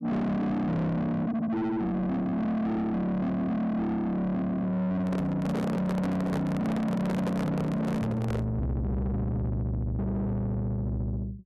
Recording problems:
distortion; soft clipping, signal-to-distortion ratio 7 dB
handling noise; from 5 to 8.5 s; peak +2 dB vs average level

